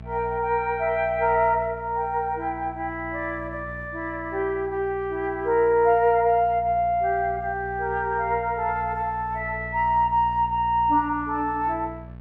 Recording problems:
mains hum; 60 Hz, harmonics up to 1.1 kHz, SNR 16 dB

